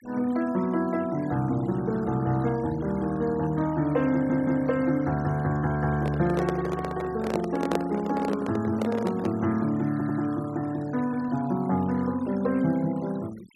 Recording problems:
denoising artefacts; signal-to-artefact ratio 21 dB
stutter; at 4 s and at 10 s
handling noise; from 6 to 9.5 s; peak +2 dB vs average level

